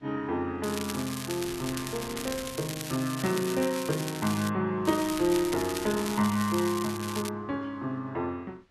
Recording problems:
wind noise; below 2.2 kHz, SNR 19 dB
crackle; from 0.5 to 2.5 s, from 2.5 to 4.5 s and from 5 to 7.5 s; loose cable, SNR 8 dB

